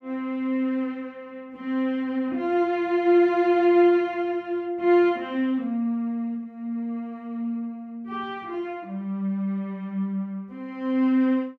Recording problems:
none

